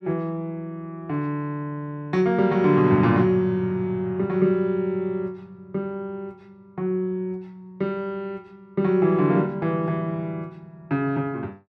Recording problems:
none

